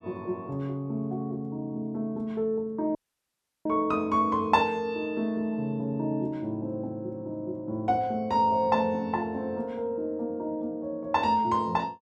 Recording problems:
dropout; at 3 s for 0.5 s

